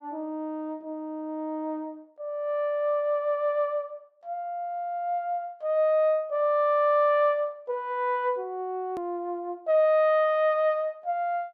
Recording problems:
click at an edit; at 9 s

